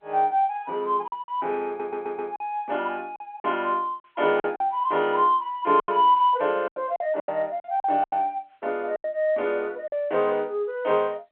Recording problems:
telephone audio; 260 Hz to 3.6 kHz, G.711
lost packets; 8% of the sound replaced, filled with silence
audio stuttering; at 1.5 s

